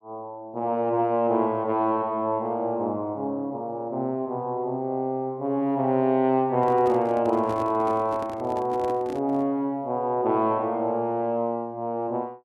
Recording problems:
microphone handling noise; from 6.5 to 9.5 s; peak -7 dB vs average level

